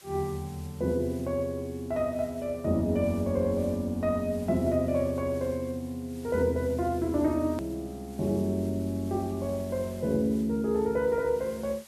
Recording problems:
hiss; slope 0 dB per octave, SNR 23 dB
hard cut with a click; at 7.5 s

